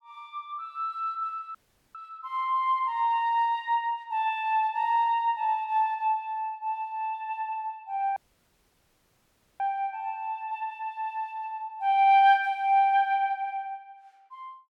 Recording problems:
dropout; at 1.5 s and at 8 s for 1.5 s

